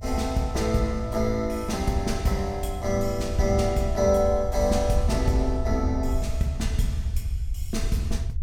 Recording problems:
low-frequency rumble; below 74 Hz, SNR 5 dB

